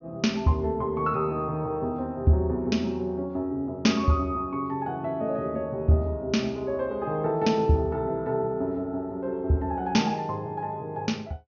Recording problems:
treble cut off; nothing above 6.7 kHz

